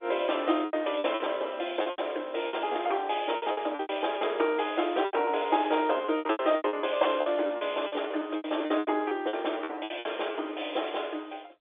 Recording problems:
telephone audio; 260 Hz to 3.6 kHz, G.711
lost packets; 16% of the sound replaced, filled with repeated pitch periods

